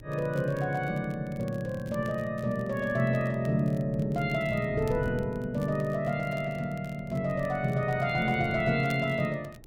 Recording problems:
wind on the microphone; below 260 Hz, SNR 16 dB
crackle; vinyl, SNR 27 dB

